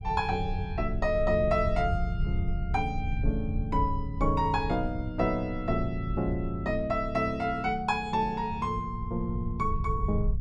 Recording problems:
rumble; below 84 Hz, SNR 6 dB

